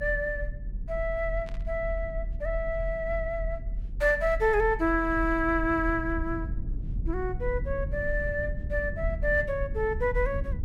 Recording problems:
low-frequency rumble; below 64 Hz, strongest tone 40 Hz, SNR 7 dB
static burst; at 1.5 s; peak -15 dB vs average level

